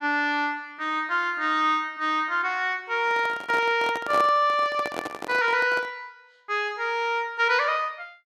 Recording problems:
microphone handling noise; from 3 to 6 s; peak -3 dB vs average level

